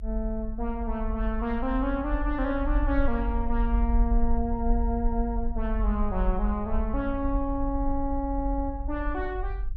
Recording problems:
rumble; below 48 Hz, SNR 1 dB

